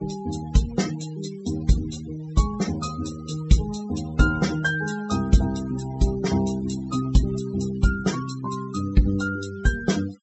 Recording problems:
treble missing; nothing above 7.7 kHz
noise reduction artefacts; signal-to-artefact ratio 16 dB

